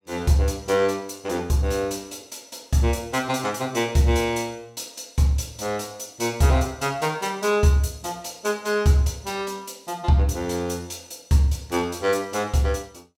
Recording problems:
none

